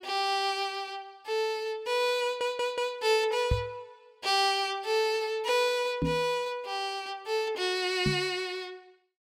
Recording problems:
stutter; at 2 s
microphone thump; at 3.5 s, at 6 s and at 8 s; peak +4 dB vs average level

